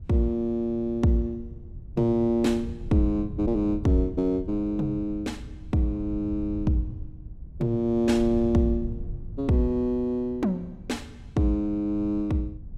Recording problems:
wind on the microphone; below 110 Hz, SNR 13 dB

